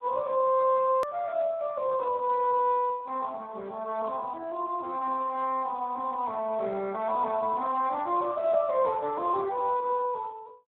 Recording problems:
phone line; 240 Hz to 2 kHz, Speex
edit click; at 1 s

